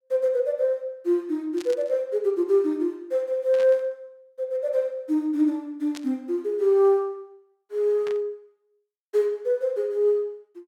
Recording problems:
burst of static; 4 times, first at 1.5 s; peak -10 dB vs average level

